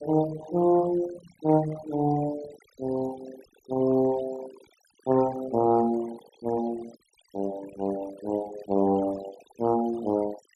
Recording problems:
denoising artefacts; signal-to-artefact ratio 17 dB

